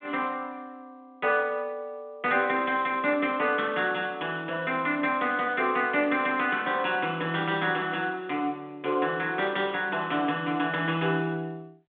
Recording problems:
phone line; 170 Hz to 3.6 kHz, G.726

